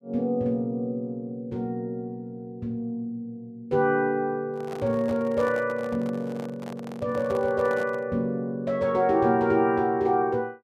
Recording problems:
handling noise; from 4.5 to 8 s; peak -8 dB vs average level

